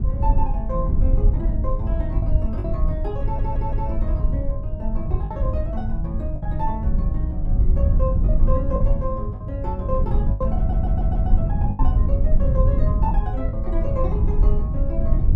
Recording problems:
low-frequency rumble; below 74 Hz, SNR -7 dB
packet loss; 4% of the sound replaced, filled with the last packet
audio stuttering; at 3 s and at 11 s

